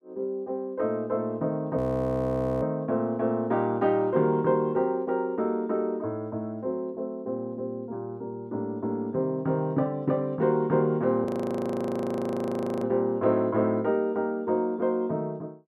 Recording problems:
audio freezing; at 2 s for 1 s and at 11 s for 1.5 s

